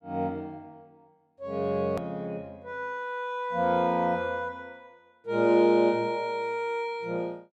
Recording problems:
edit click; at 2 s

